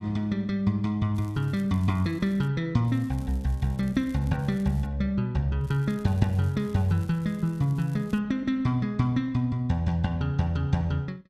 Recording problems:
crackle; from 1 to 2.5 s, from 3 to 5 s and from 5.5 to 8 s; loose cable, SNR 28 dB

